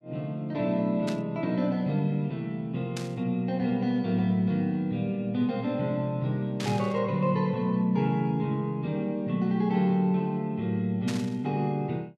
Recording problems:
burst of static; 4 times, first at 1 s; peak -5 dB vs average level

